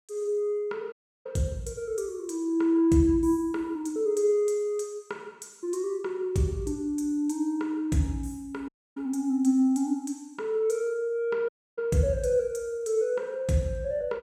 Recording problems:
audio cutting out; at 1 s, at 8.5 s and at 11 s

